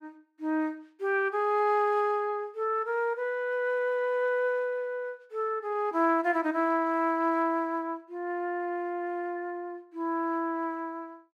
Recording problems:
none

